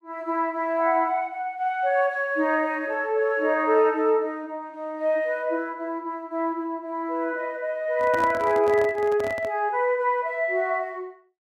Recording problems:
handling noise; from 8 to 9.5 s; peak -5 dB vs average level

